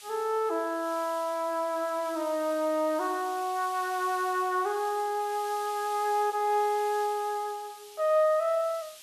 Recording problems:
background hiss; slope +4 dB per octave, SNR 18 dB

